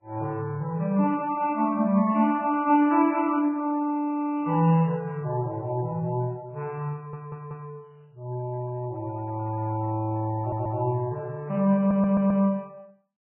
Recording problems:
lossy codec; MP3, then Vorbis, log-spectral distance 2 dB, nothing above 2.7 kHz
audio stuttering; at 7 s, at 10 s and at 12 s

